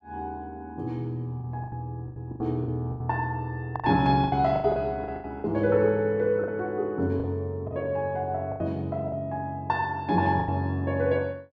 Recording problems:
packet loss; 10% of the sound replaced, filled with the last packet

